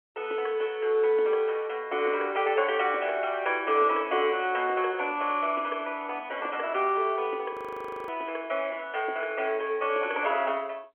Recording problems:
phone line; 260 Hz to 3.3 kHz, G.711
frozen audio; at 7.5 s for 0.5 s

